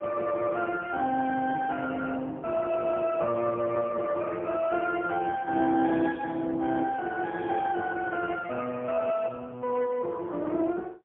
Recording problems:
phone line; 240 Hz to 3.1 kHz, AMR-NB, then MP3

